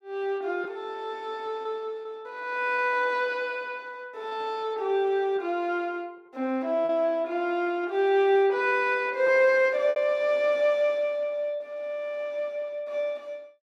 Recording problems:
lost packets; 3% of the sound replaced, filled with repeated pitch periods

